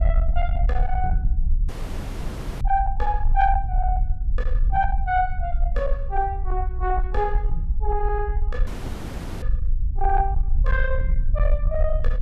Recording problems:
distorted audio; soft clipping, signal-to-distortion ratio 11 dB
rumble; below 52 Hz, strongest tone 24 Hz, SNR 0 dB
dropout; at 1.5 s for 1 s and at 8.5 s for 1 s

